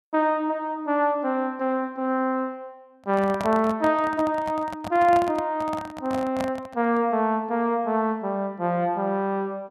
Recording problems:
microphone handling noise; from 3 to 7 s; peak -3 dB vs average level

